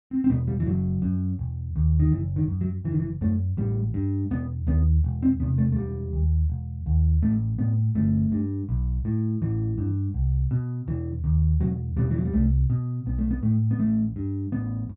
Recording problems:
none

